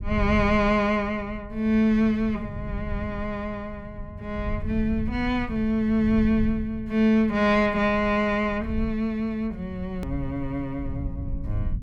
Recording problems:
rumble; below 110 Hz, SNR 11 dB
click at an edit; at 10 s

